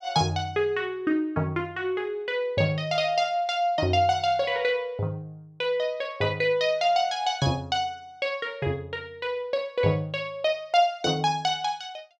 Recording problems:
none

